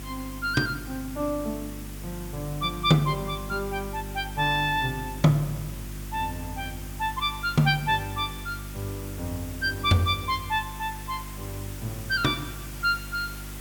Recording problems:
hum; 50 Hz, harmonics up to 350 Hz, SNR 12 dB
background hiss; slope -1 dB per octave, SNR 14 dB

